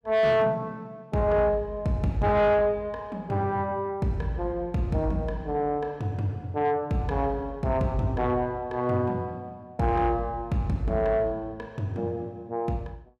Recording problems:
distortion; soft clipping, signal-to-distortion ratio 11 dB

